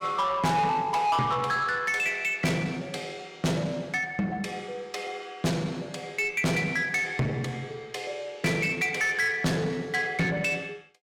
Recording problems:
distorted audio; soft clipping, signal-to-distortion ratio 6 dB

